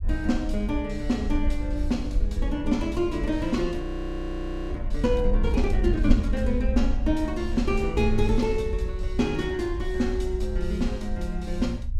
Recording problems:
rumble; below 60 Hz, SNR 3 dB
frozen audio; at 4 s for 1 s

